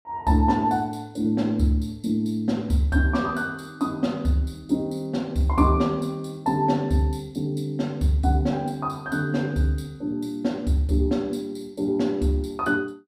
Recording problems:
none

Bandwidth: 15.5 kHz